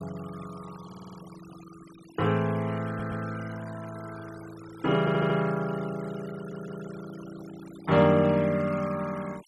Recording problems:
denoising artefacts; signal-to-artefact ratio 21 dB
audio stuttering; 4 times, first at 1 s

